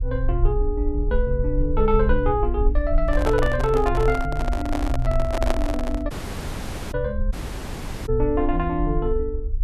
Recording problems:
rumble; below 54 Hz, SNR 3 dB
microphone handling noise; from 3 to 6 s; peak +3 dB vs average level
audio cutting out; at 6 s for 1 s and at 7.5 s for 1 s

